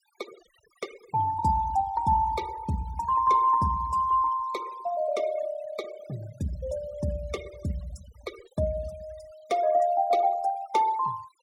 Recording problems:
noise reduction artefacts; signal-to-artefact ratio 21 dB

